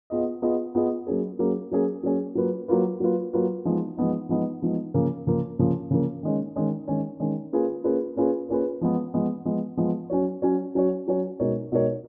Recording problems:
none

